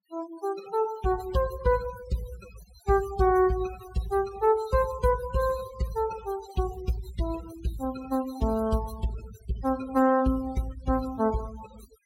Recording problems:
denoising artefacts; signal-to-artefact ratio 17 dB

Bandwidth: 16.5 kHz